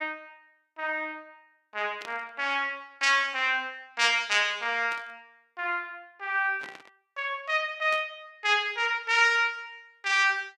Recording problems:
static burst; 4 times, first at 2 s; peak -12 dB vs average level

